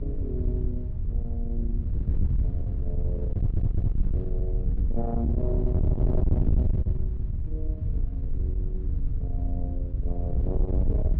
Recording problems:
distortion; soft clipping, signal-to-distortion ratio 7 dB
hum; 60 Hz, harmonics up to 660 Hz, SNR 18 dB
wind noise; below 88 Hz, SNR -8 dB
stutter; at 3.5 s

